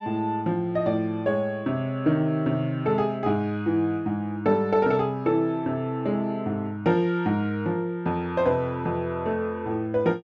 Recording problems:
none

